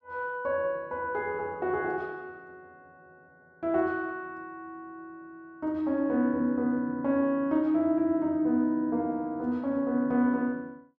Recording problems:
none

